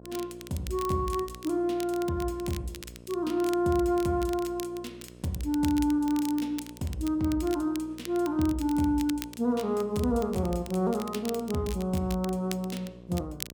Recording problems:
hum; 60 Hz, harmonics up to 1.1 kHz, SNR 20 dB
crackle; vinyl, SNR 16 dB

